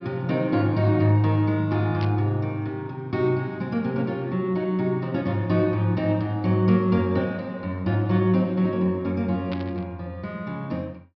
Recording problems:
treble cut off; nothing above 5.5 kHz
burst of static; at 2 s and at 9.5 s; peak -9 dB vs average level

